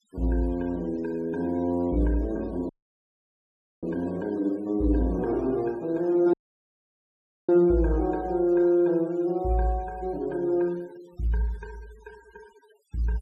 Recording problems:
noise reduction artefacts; signal-to-artefact ratio 28 dB
audio cutting out; at 2.5 s for 1 s and at 6.5 s for 1 s

